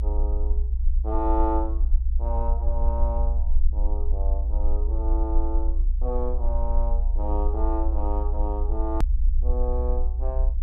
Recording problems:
low-frequency rumble; below 60 Hz, SNR -6 dB
edit click; at 9 s

